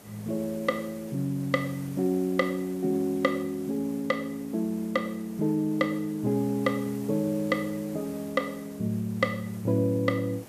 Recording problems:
hiss; SNR 19 dB

